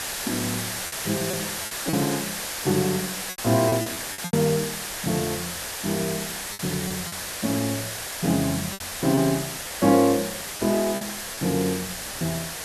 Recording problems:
hiss; SNR 4 dB
wind noise; below 790 Hz, SNR 23 dB
lost packets; 5% of the sound replaced, filled with repeated pitch periods

